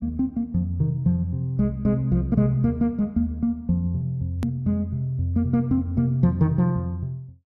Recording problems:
click at an edit; at 4.5 s

